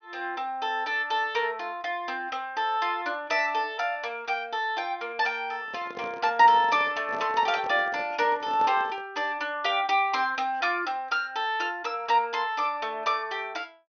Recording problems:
low-pass filter; nothing above 6.4 kHz
handling noise; from 5.5 to 9 s; peak -9 dB vs average level

